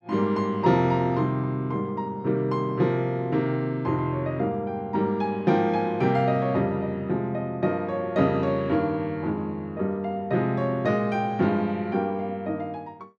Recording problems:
none

